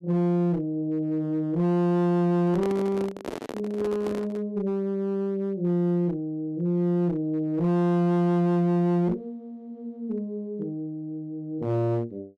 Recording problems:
distortion; hard clipping, uneven, signal-to-distortion ratio 10 dB
microphone handling noise; from 2.5 to 4.5 s; peak -3 dB vs average level

